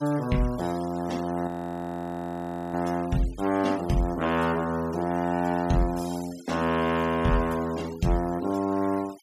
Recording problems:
denoising artefacts; signal-to-artefact ratio 19 dB
audio freezing; at 1.5 s for 1.5 s

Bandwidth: 15 kHz